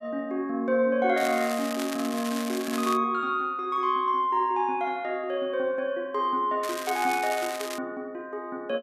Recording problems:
crackling; from 1 to 3 s and from 6.5 to 8 s; loose cable, SNR 10 dB

